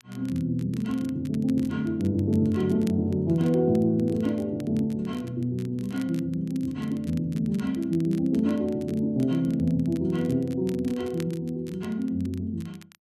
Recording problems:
crackling; vinyl, SNR 25 dB

